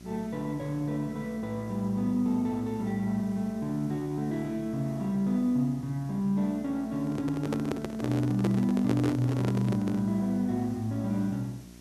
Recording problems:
electrical hum; 60 Hz, harmonics up to 1.1 kHz, SNR 20 dB
background hiss; slope +3 dB per octave, SNR 27 dB
handling noise; from 7 to 10 s; peak +1 dB vs average level

